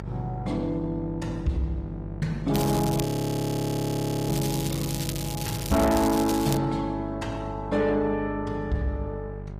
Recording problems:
codec artefacts; Opus, log-spectral distance 3 dB, nothing above 15.1 kHz
distorted audio; soft clipping, signal-to-distortion ratio 10 dB
hum; 50 Hz, harmonics up to 800 Hz, SNR 10 dB
crackle; from 2.5 to 6.5 s; loose cable, SNR 9 dB
audio freezing; at 3 s for 1 s

